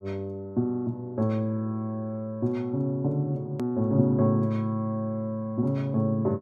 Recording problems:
edit click; at 3.5 s

